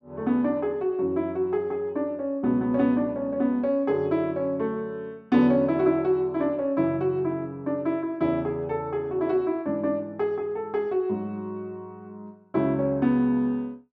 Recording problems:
none

